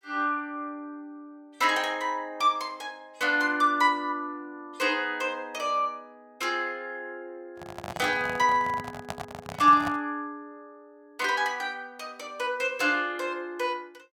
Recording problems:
microphone handling noise; from 7.5 to 10 s; peak -4 dB vs average level

